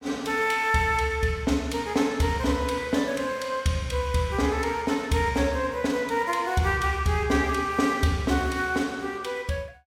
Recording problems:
none

